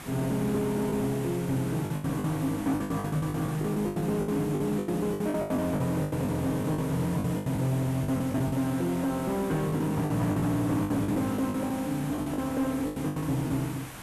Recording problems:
distortion; soft clipping, signal-to-distortion ratio 12 dB
hiss; SNR 13 dB
packet loss; 15% of the sound replaced, filled with the last packet

